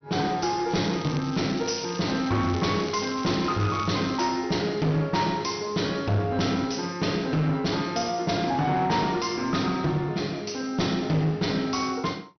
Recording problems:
treble cut off; nothing above 6.1 kHz
distorted audio; hard clipping, uneven, signal-to-distortion ratio 10 dB
crackling; from 0.5 to 4 s; loose cable, SNR 15 dB

